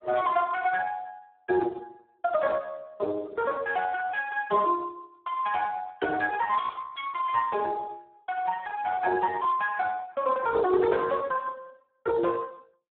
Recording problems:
telephone audio; 260 Hz to 2.2 kHz, Speex

